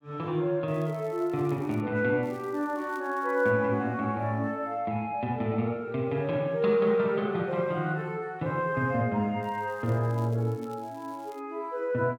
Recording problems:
crackling; from 0.5 to 2 s, from 2 to 3.5 s and from 9.5 to 11 s; loose cable, SNR 29 dB

